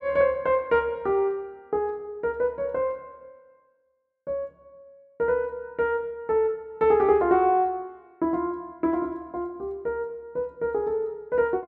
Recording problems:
none

